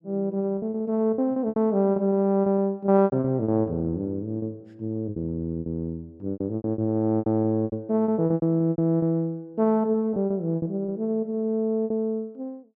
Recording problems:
lost packets; 15% of the sound replaced, filled with repeated pitch periods

